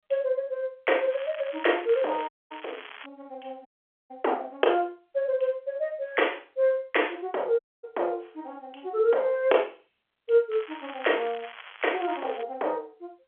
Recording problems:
phone line; 370 Hz to 3.4 kHz, G.711
crackle; from 1 to 3 s and from 11 to 12 s; loose cable, SNR 16 dB
dropout; at 2.5 s, at 3.5 s and at 7.5 s

